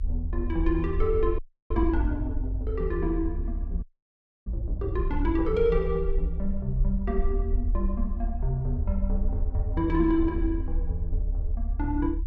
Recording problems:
low-frequency rumble; below 58 Hz, strongest tone 36 Hz, SNR 2 dB
frozen audio; at 1.5 s and at 4 s for 0.5 s

